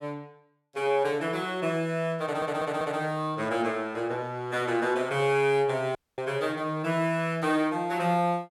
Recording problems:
stutter; at 2 s
dropout; at 6 s

